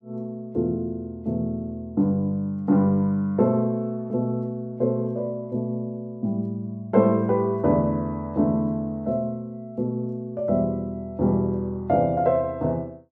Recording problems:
none

